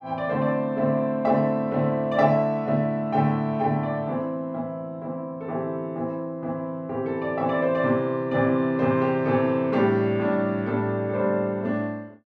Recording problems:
none

